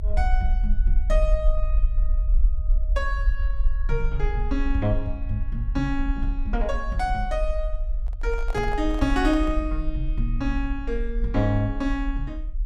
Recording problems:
low-frequency rumble; below 46 Hz, SNR 0 dB
microphone handling noise; from 8 to 9.5 s; peak -4 dB vs average level

